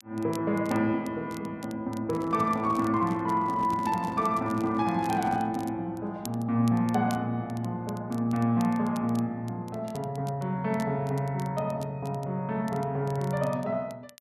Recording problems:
crackling; vinyl, SNR 22 dB
handling noise; from 2 to 5.5 s; peak -5 dB vs average level

